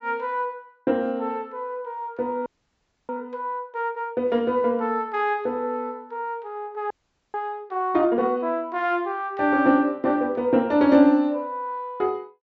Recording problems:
treble cut off; nothing above 7.7 kHz
frozen audio; at 2.5 s for 0.5 s and at 7 s

